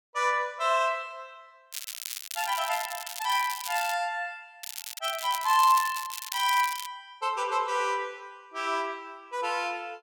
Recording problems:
crackle; from 1.5 to 4 s and from 4.5 to 7 s; loose cable, SNR 8 dB

